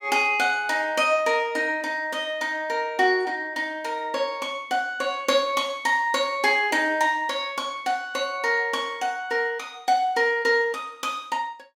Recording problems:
none

